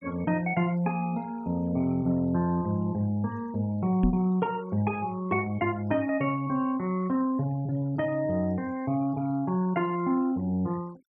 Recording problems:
noise reduction artefacts; signal-to-artefact ratio 26 dB
microphone thump; at 4 s; peak +5 dB vs average level

